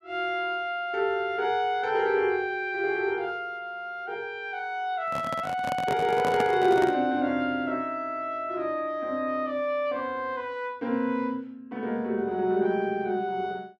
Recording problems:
microphone handling noise; from 5 to 7 s; peak 0 dB vs average level

